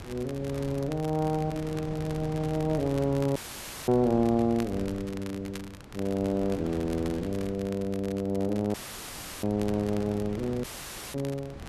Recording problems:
wind noise; below 490 Hz, SNR 14 dB
crackling; vinyl, SNR 19 dB
audio cutting out; at 3.5 s for 0.5 s, at 8.5 s for 0.5 s and at 11 s for 0.5 s; filled with static

